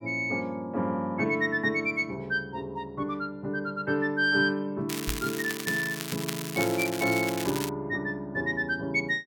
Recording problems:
crackling; from 5 to 7.5 s; loose cable, SNR 7 dB
knock on the microphone; at 5 s; peak -3 dB vs average level

